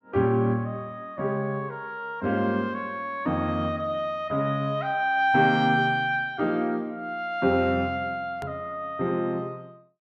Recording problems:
click at an edit; at 8.5 s

